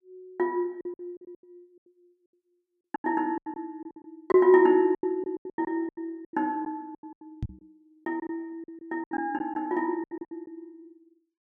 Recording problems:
lost packets; 17% of the sound replaced, filled with silence
microphone bump; at 7.5 s; peak -2 dB vs average level

